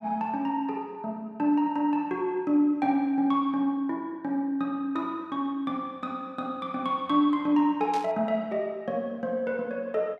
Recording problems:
static burst; at 8 s; peak -9 dB vs average level

